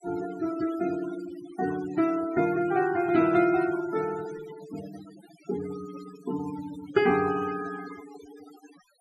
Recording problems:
denoising artefacts; signal-to-artefact ratio 15 dB

